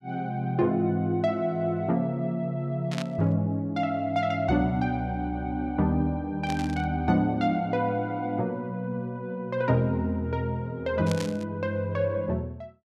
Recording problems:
static burst; at 3 s, at 6.5 s and at 11 s; peak -4 dB vs average level

